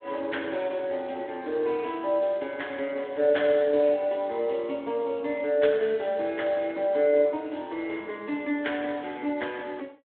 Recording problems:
phone line; 240 Hz to 3.7 kHz, Speex

